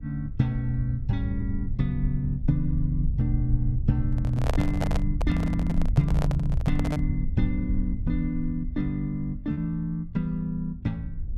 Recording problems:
low-frequency rumble; below 76 Hz, SNR 3 dB
packet loss; 0.9% of the sound replaced, filled with repeated pitch periods
handling noise; from 4 to 7 s; peak +2 dB vs average level

